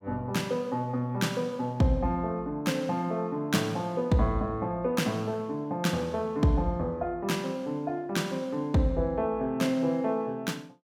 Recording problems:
none

